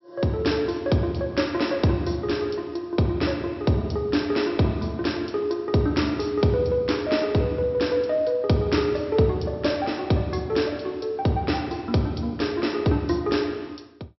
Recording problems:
treble cut off; nothing above 5.6 kHz

